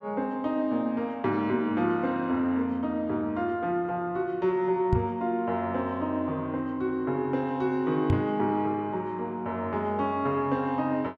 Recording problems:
microphone thump; at 5 s and at 8 s; peak +6 dB vs average level

